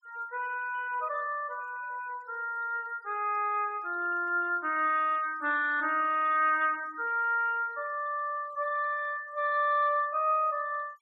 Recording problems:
denoising artefacts; signal-to-artefact ratio 26 dB

